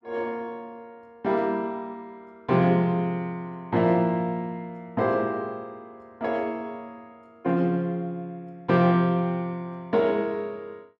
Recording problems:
none

